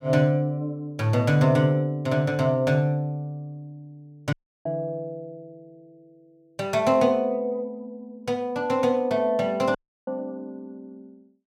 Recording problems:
dropout; at 4.5 s and at 10 s

